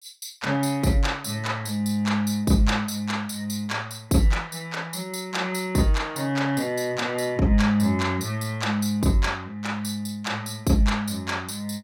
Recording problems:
none

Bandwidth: 16.5 kHz